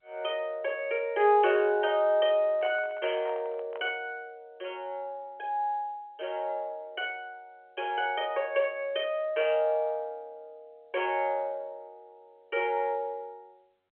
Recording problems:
telephone audio; 320 Hz to 3.3 kHz, G.711
handling noise; from 2.5 to 4 s; peak -10 dB vs average level

